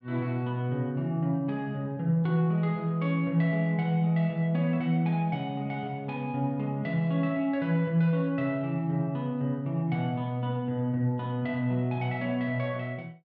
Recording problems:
none

